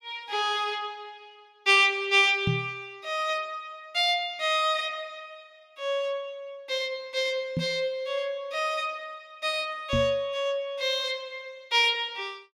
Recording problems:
microphone bump; at 2.5 s, at 7.5 s and at 10 s; peak +2 dB vs average level

